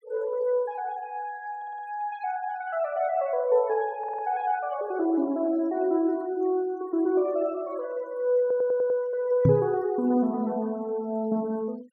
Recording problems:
noise reduction artefacts; signal-to-artefact ratio 27 dB
audio stuttering; at 1.5 s, at 4 s and at 8.5 s
microphone thump; at 9.5 s; peak +8 dB vs average level

